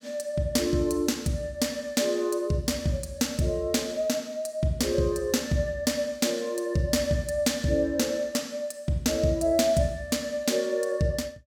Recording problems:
none

